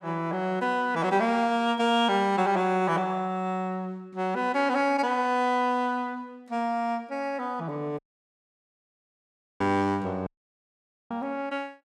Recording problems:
audio cutting out; at 8 s for 1.5 s and at 10 s for 1 s

